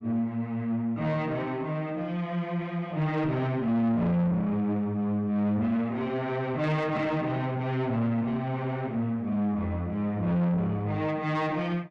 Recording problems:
distortion; soft clipping, signal-to-distortion ratio 10 dB

